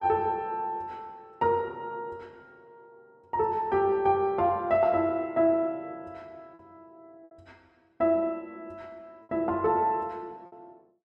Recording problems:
packet loss; 0.9% of the sound replaced, filled with repeated pitch periods

